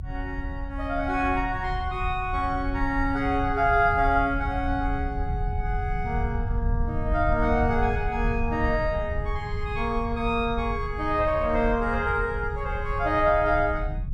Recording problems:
low-frequency rumble; below 90 Hz, SNR 6 dB

